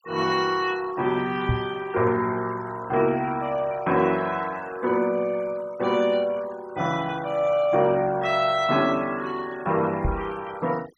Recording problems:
denoising artefacts; signal-to-artefact ratio 20 dB
microphone thump; at 1.5 s and at 10 s; peak +3 dB vs average level

